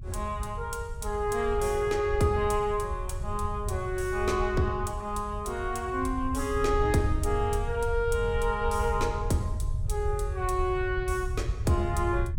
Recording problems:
low-frequency rumble; below 86 Hz, SNR 5 dB

